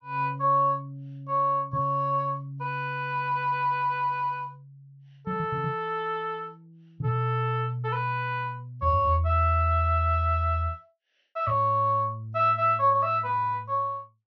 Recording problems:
low-pass filter; nothing above 6.1 kHz

